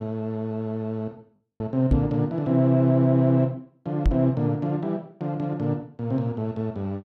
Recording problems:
lost packets; 1.3% of the sound replaced, filled with the last packet
microphone bump; at 2 s and at 4 s; peak +7 dB vs average level

